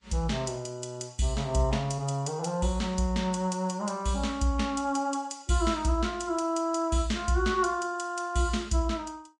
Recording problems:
codec artefacts; Vorbis, log-spectral distance 2 dB

